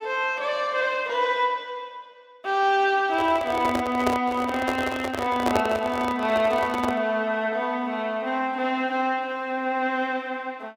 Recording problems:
handling noise; from 3 to 7 s; peak +4 dB vs average level

